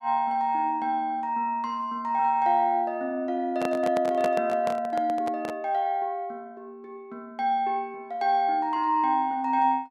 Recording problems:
handling noise; from 3.5 to 5.5 s; peak -1 dB vs average level

